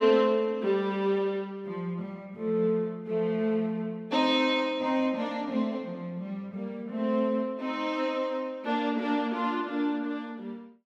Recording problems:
none

